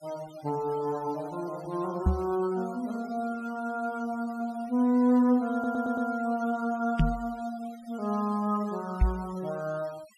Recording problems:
denoising artefacts; signal-to-artefact ratio 23 dB
microphone bump; at 2 s, at 7 s and at 9 s; peak +9 dB vs average level
audio stuttering; at 5.5 s

